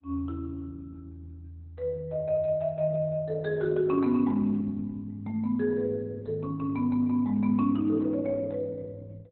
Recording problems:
codec artefacts; Opus, log-spectral distance 2 dB, nothing above 4 kHz

